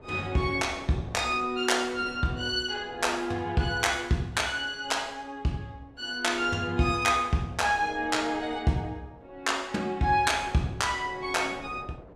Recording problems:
wind on the microphone; below 660 Hz, SNR 21 dB

